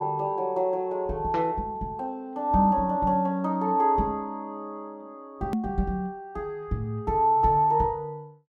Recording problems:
hard cut with a click; at 5.5 s

